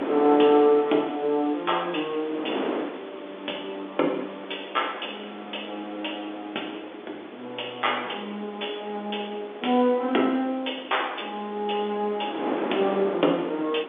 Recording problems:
telephone audio; 260 Hz to 3.6 kHz, G.711
hiss; SNR 22 dB
wind on the microphone; below 810 Hz, SNR 10 dB

